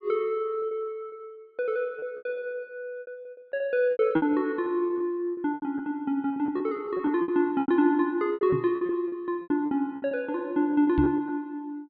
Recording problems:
low-pass filter; nothing above 4.7 kHz
packet loss; 15% of the sound replaced, filled with repeated pitch periods
knock on the microphone; at 8.5 s and at 11 s; peak +1 dB vs average level

